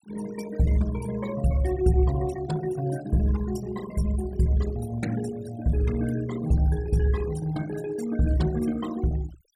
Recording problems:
denoising artefacts; signal-to-artefact ratio 17 dB

